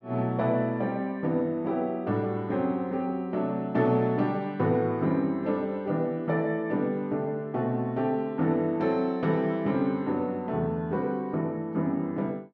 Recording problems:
none

